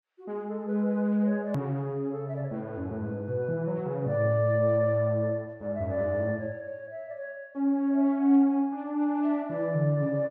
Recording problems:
hard cut with a click; at 1.5 s

